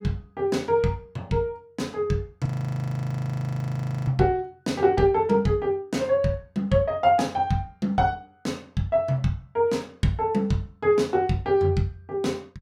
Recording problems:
frozen audio; at 2.5 s for 1.5 s

